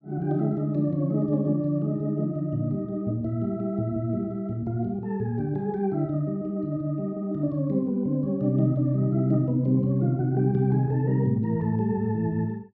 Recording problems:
none

